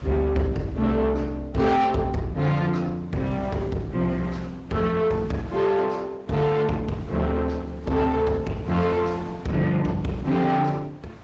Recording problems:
treble missing; nothing above 8 kHz
lossy codec; Opus, log-spectral distance 2 dB
distortion; soft clipping, signal-to-distortion ratio 12 dB
wind noise; below 790 Hz, SNR 20 dB

